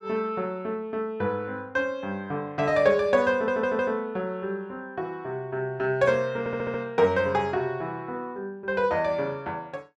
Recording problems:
stutter; at 3.5 s and at 6.5 s

